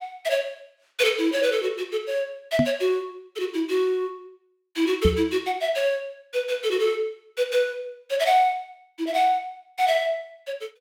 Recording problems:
knock on the microphone; at 2.5 s and at 5 s; peak +6 dB vs average level

